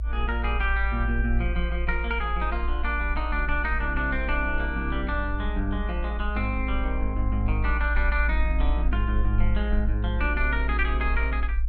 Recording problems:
low-frequency rumble; below 56 Hz, strongest tone 56 Hz, SNR 0 dB

